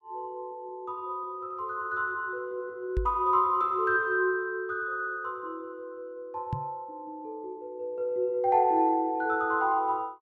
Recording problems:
microphone bump; at 3 s and at 6.5 s; peak +2 dB vs average level

